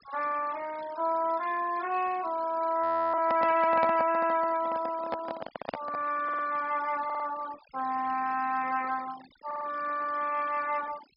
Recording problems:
treble missing; nothing above 5.5 kHz
denoising artefacts; signal-to-artefact ratio 18 dB
audio freezing; at 3 s
handling noise; from 3 to 6 s; peak 0 dB vs average level
audio stuttering; 4 times, first at 4 s

